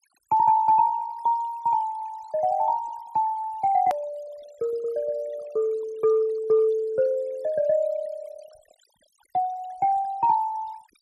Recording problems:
denoising artefacts; signal-to-artefact ratio 24 dB
edit click; at 4 s

